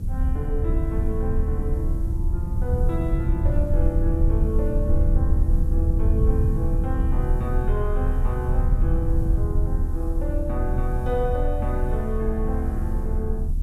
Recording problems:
hiss; slope +3 dB per octave, SNR 27 dB
low-frequency rumble; below 74 Hz, strongest tone 30 Hz, SNR -6 dB

